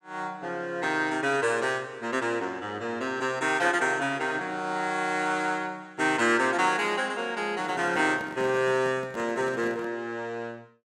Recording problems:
handling noise; from 7.5 to 10 s; peak -9 dB vs average level

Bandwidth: 17 kHz